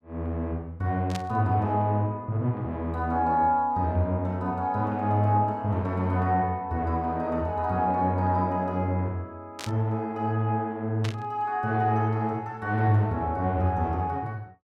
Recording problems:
static burst; at 1 s, at 9.5 s and at 11 s; peak -5 dB vs average level

